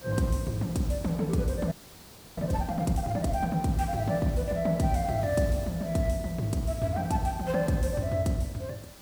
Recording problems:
background hiss; SNR 19 dB
audio freezing; at 1.5 s for 0.5 s

